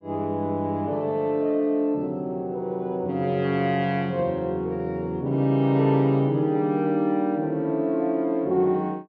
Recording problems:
none

